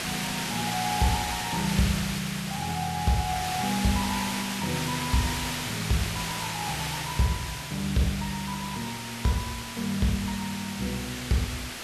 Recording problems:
background hiss; slope -1 dB per octave, SNR 2 dB

